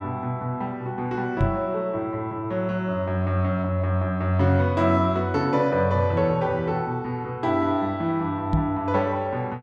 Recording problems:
microphone thump; at 1.5 s and at 8.5 s; peak +5 dB vs average level

